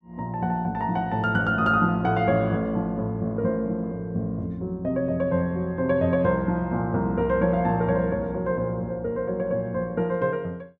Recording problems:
none

